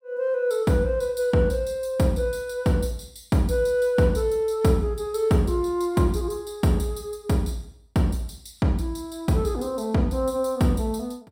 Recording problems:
none

